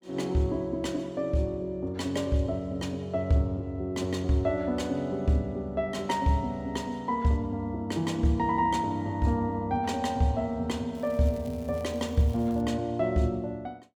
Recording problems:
crackle; from 11 to 13 s; loose cable, SNR 26 dB

